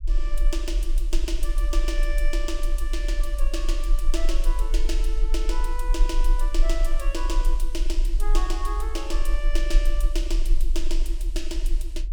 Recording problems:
low-frequency rumble; below 36 Hz, strongest tone 20 Hz, SNR -7 dB

